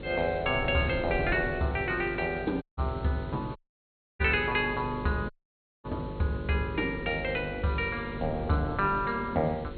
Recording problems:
treble missing; nothing above 4.3 kHz
hum; 50 Hz, harmonics up to 550 Hz, SNR 11 dB
background hiss; SNR 23 dB
wind on the microphone; below 360 Hz, SNR 13 dB
dropout; at 2.5 s, at 3.5 s for 0.5 s and at 5.5 s for 0.5 s

